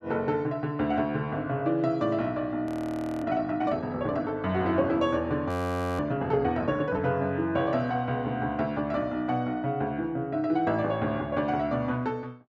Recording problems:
audio freezing; at 2.5 s for 0.5 s and at 5.5 s for 0.5 s

